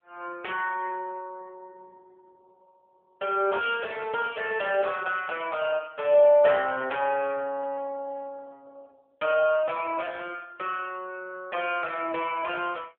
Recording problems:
telephone audio; 340 Hz to 3.4 kHz, AMR-NB

